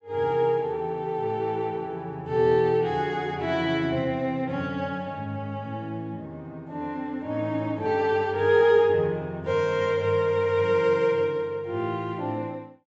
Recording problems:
treble missing; nothing above 7.7 kHz

